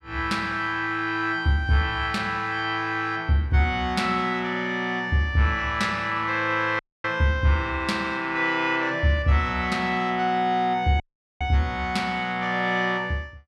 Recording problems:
audio cutting out; at 7 s and at 11 s

